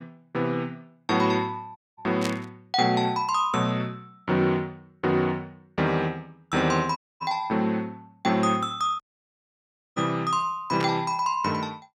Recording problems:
dropout; at 2 s, at 7 s and at 9 s for 1 s
burst of static; at 2 s and at 11 s; peak -2 dB vs average level

